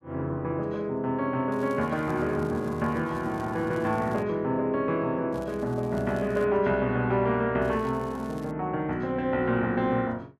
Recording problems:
crackle; from 1.5 to 4 s, from 5.5 to 6.5 s and at 7.5 s; loose cable, SNR 27 dB

